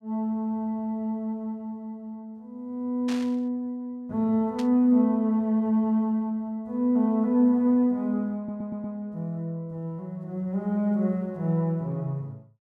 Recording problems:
static burst; at 3 s and at 4.5 s; peak -8 dB vs average level
stutter; at 8.5 s

